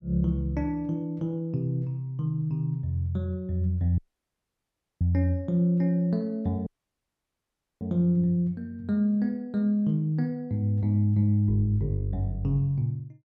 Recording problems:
audio cutting out; at 4 s for 1 s and at 6.5 s for 1 s

